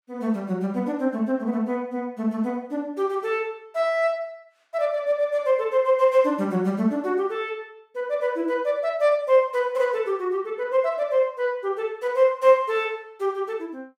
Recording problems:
none

